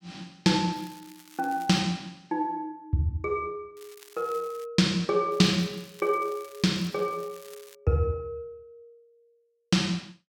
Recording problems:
crackling; from 0.5 to 2 s, at 4 s and from 5.5 to 8 s; loose cable, SNR 23 dB

